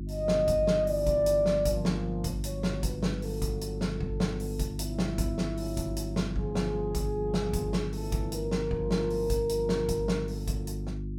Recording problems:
hum; 50 Hz, harmonics up to 350 Hz, SNR 6 dB

